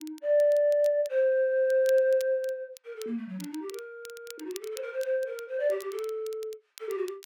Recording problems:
crackling; vinyl, SNR 22 dB

